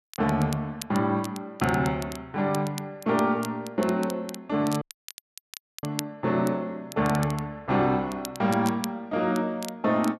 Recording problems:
crackle; vinyl, SNR 15 dB
audio cutting out; at 5 s for 1 s

